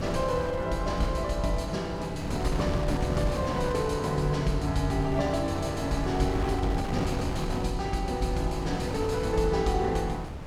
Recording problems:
wind noise; below 460 Hz, SNR 6 dB

